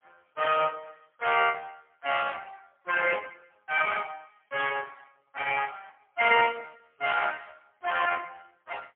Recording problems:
telephone audio; 320 Hz to 3.1 kHz, AMR-NB, then MP3

